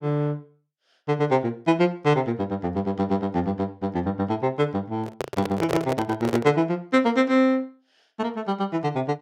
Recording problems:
microphone handling noise; from 5 to 6.5 s; peak +3 dB vs average level

